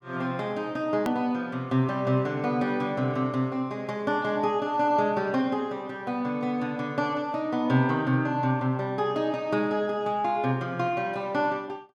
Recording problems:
hard cut with a click; at 1 s

